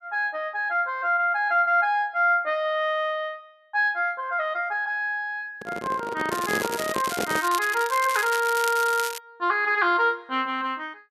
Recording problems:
microphone handling noise; from 5.5 to 7.5 s; peak -1 dB vs average level
crackle; from 6.5 to 9 s; loose cable, SNR 9 dB

